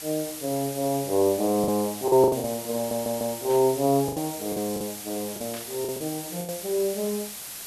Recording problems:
background hiss; slope +1 dB per octave, SNR 9 dB
packet loss; 8% of the sound replaced, filled with the last packet
stutter; at 3 s
static burst; at 3.5 s and at 5.5 s; peak -11 dB vs average level

